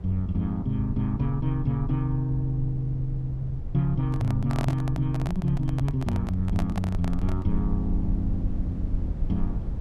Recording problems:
low-frequency rumble; below 78 Hz, SNR 6 dB
microphone handling noise; from 4 to 7.5 s; peak -2 dB vs average level

